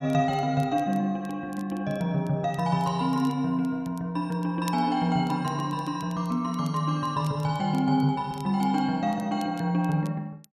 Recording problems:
crackle; vinyl, SNR 26 dB

